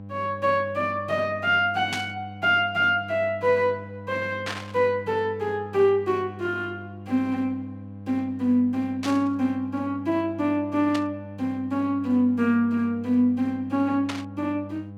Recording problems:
electrical hum; 50 Hz, harmonics up to 800 Hz, SNR 15 dB
static burst; 5 times, first at 2 s; peak -2 dB vs average level

